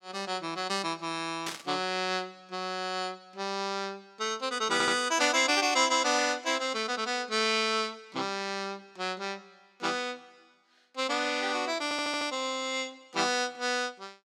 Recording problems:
burst of static; at 1.5 s; peak -2 dB vs average level
stutter; at 4.5 s and at 12 s

